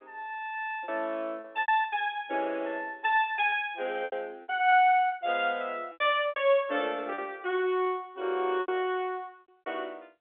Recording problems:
phone line; 260 Hz to 3.6 kHz, G.711
lost packets; 7% of the sound replaced, filled with repeated pitch periods

